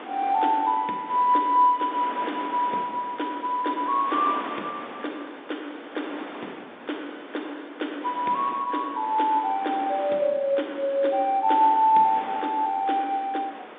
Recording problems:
phone line; 220 Hz to 3.7 kHz, G.711
wind on the microphone; below 1.8 kHz, SNR 15 dB

